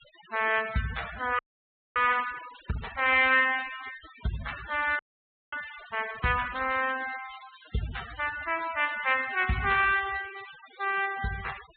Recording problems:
treble cut off; nothing above 4 kHz
denoising artefacts; signal-to-artefact ratio 15 dB
frozen audio; at 1.5 s for 0.5 s and at 5 s for 0.5 s

